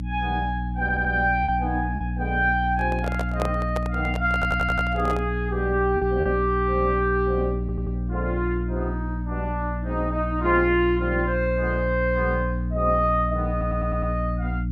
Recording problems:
hum; 60 Hz, harmonics up to 300 Hz, SNR 3 dB
lost packets; 1.2% of the sound replaced, filled with repeated pitch periods
stutter; 4 times, first at 1 s
handling noise; from 3 to 5 s; peak 0 dB vs average level

